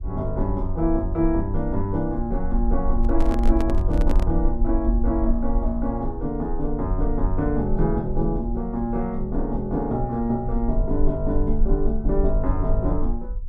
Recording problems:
low-frequency rumble; below 46 Hz, strongest tone 20 Hz, SNR 3 dB
microphone handling noise; from 3 to 4.5 s; peak -2 dB vs average level

